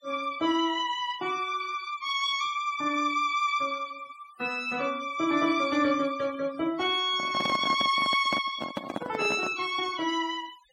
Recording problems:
denoising artefacts; signal-to-artefact ratio 20 dB
microphone handling noise; from 7 to 9.5 s; peak -1 dB vs average level

